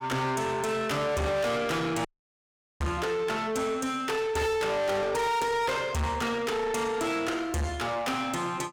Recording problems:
distorted audio; soft clipping, signal-to-distortion ratio 6 dB
audio cutting out; at 2 s for 1 s

